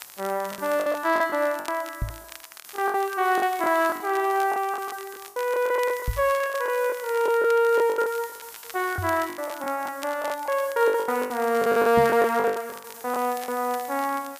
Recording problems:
background hiss; SNR 19 dB
crackle; vinyl, SNR 20 dB
lost packets; 16% of the sound replaced, filled with the last packet
microphone thump; 4 times, first at 2 s; peak 0 dB vs average level

